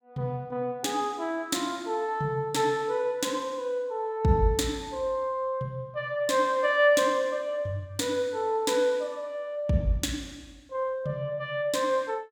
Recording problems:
none

